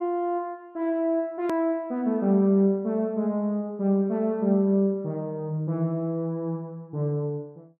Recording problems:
edit click; at 1.5 s

